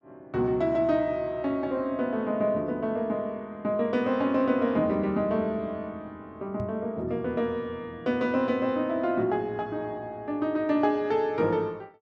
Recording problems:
microphone thump; at 6.5 s; peak -5 dB vs average level

